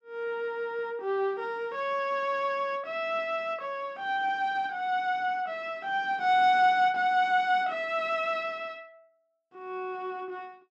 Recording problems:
none

